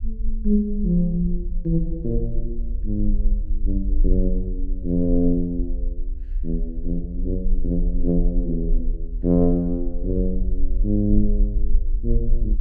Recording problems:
rumble; below 40 Hz, strongest tone 22 Hz, SNR 3 dB

